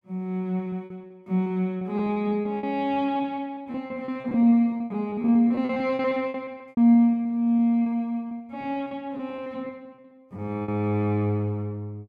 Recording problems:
lost packets; 16% of the sound replaced, filled with repeated pitch periods

